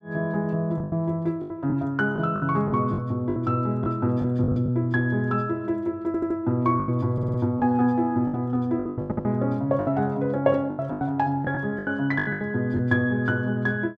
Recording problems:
lost packets; 11% of the sound replaced, filled with the last packet
stutter; at 6 s, at 7 s and at 9 s

